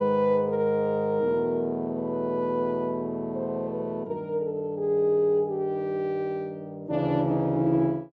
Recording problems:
treble cut off; nothing above 8 kHz

